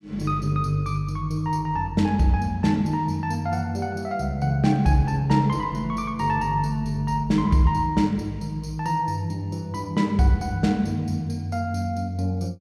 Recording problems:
none

